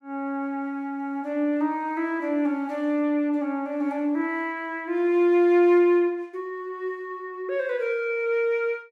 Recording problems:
none

